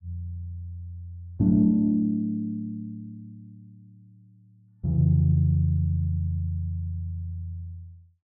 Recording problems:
none

